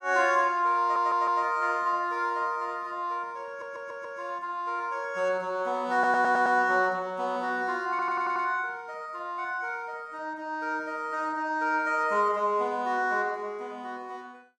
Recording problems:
audio stuttering; 4 times, first at 1 s

